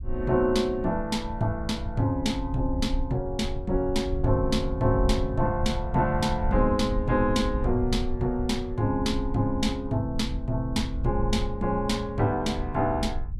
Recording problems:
rumble; below 74 Hz, SNR 7 dB

